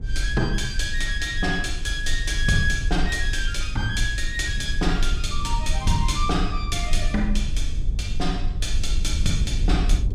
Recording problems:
low-frequency rumble; below 52 Hz, SNR 2 dB
wind on the microphone; below 180 Hz, SNR 12 dB

